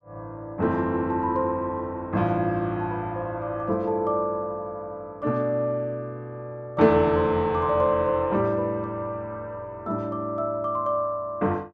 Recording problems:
none

